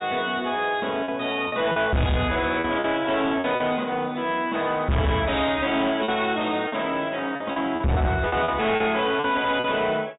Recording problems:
low-pass filter; nothing above 4 kHz
distorted audio; soft clipping, signal-to-distortion ratio 8 dB
lost packets; 7% of the sound replaced, filled with repeated pitch periods

